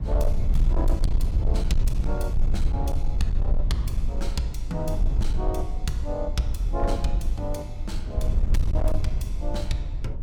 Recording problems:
distorted audio; hard clipping, signal-to-distortion ratio 11 dB
low-frequency rumble; below 60 Hz, SNR -5 dB

